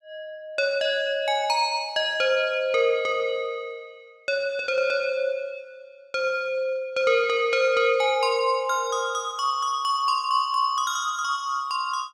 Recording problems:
none

